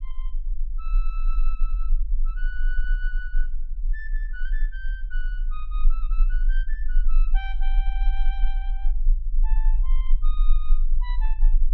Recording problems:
low-frequency rumble; below 32 Hz, strongest tone 20 Hz, SNR -15 dB

